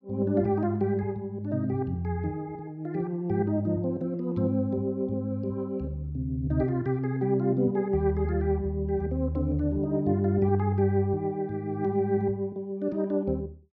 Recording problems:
none

